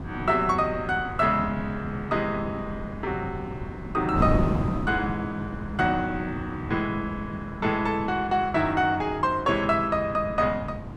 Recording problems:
wind noise; below 280 Hz, SNR 8 dB

